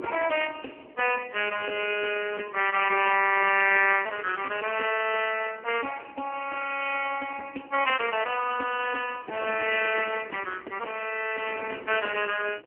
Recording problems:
telephone audio; 300 Hz to 3 kHz, AMR-NB
wind noise; below 540 Hz, SNR 19 dB

